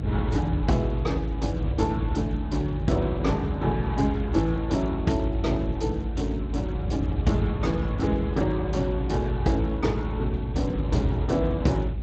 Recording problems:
codec artefacts; MP3, then Speex, log-spectral distance 2 dB, nothing above 7.6 kHz
rumble; below 110 Hz, strongest tone 54 Hz, SNR 3 dB

